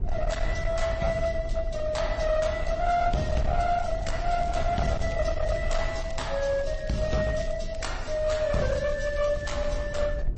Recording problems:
lossy compression; AAC, then MP3, log-spectral distance 3 dB, nothing above 8.2 kHz
distorted audio; hard clipping, uneven, signal-to-distortion ratio 12 dB
rumble; below 74 Hz, SNR 6 dB
crackling; from 3.5 to 9.5 s; loose cable, SNR 23 dB

